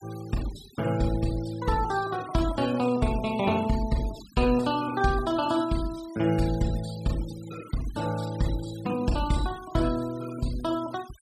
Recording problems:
denoising artefacts; signal-to-artefact ratio 18 dB

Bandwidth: 14.5 kHz